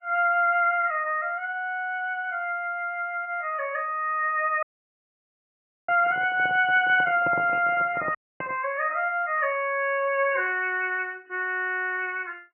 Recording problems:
codec artefacts; MP3, log-spectral distance 2 dB, nothing above 3 kHz
dropout; at 4.5 s for 1.5 s and at 8 s
handling noise; from 6 to 8.5 s; peak -4 dB vs average level

